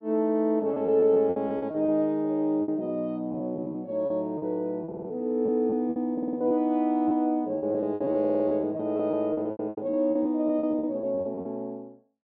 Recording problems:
lost packets; 14% of the sound replaced, filled with repeated pitch periods
stutter; at 5 s, at 6 s and at 8 s

